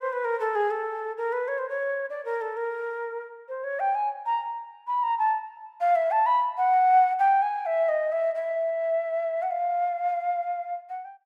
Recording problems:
none

